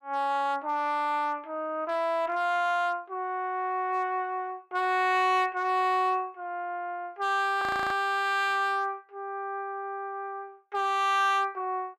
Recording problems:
distorted audio; hard clipping, uneven, signal-to-distortion ratio 11 dB
audio freezing; at 7.5 s

